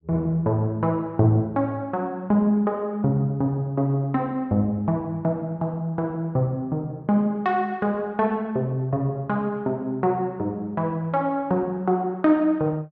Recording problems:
none

